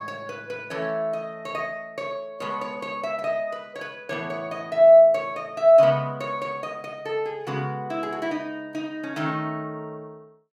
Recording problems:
none

